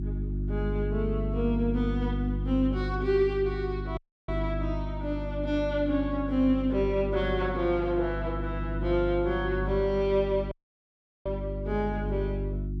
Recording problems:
electrical hum; 50 Hz, harmonics up to 350 Hz, SNR 4 dB
audio cutting out; at 4 s and at 11 s for 0.5 s

